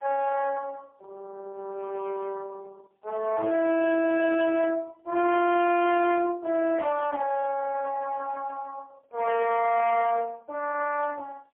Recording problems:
telephone audio; 370 Hz to 2 kHz, AMR-NB, then MP3
distortion; hard clipping, signal-to-distortion ratio 6 dB

